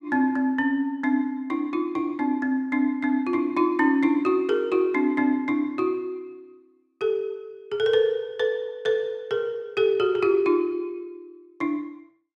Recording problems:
none

